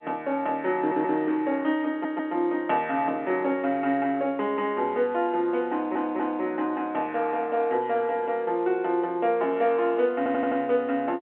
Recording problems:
telephone audio; 240 Hz to 3.7 kHz, G.711
audio stuttering; 4 times, first at 1 s

